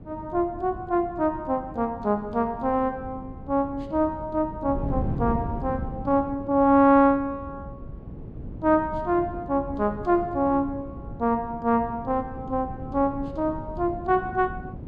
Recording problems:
wind on the microphone; below 230 Hz, SNR 12 dB

